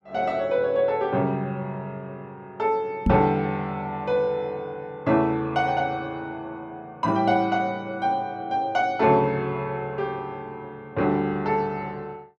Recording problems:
microphone thump; at 3 s; peak +5 dB vs average level

